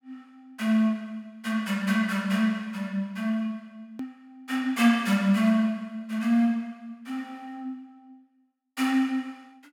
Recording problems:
hard cut with a click; at 4 s

